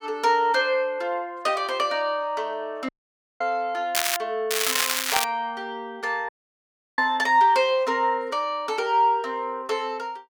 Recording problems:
audio cutting out; at 3 s for 0.5 s and at 6.5 s for 0.5 s
crackle; at 4 s and at 4.5 s; loose cable, SNR 0 dB

